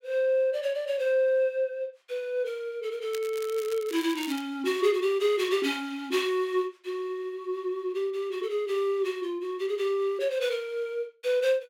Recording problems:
crackling; from 3 to 4.5 s; loose cable, SNR 15 dB

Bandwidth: 16 kHz